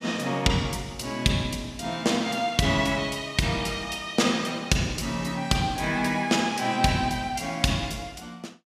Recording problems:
none

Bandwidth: 15 kHz